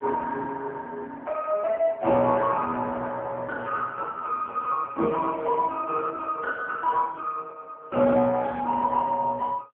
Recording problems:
phone line; 190 Hz to 3 kHz, AMR-NB

